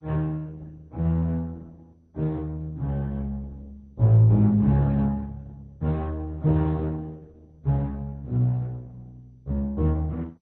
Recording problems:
lossy codec; Opus, then MP2, log-spectral distance 2 dB

